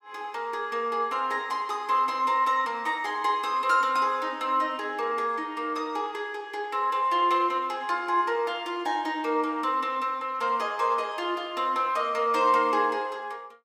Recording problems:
none

